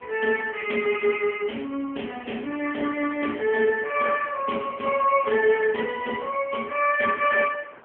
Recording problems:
telephone audio; 300 Hz to 3 kHz, AMR-NB
wind noise; below 1.4 kHz, SNR 25 dB

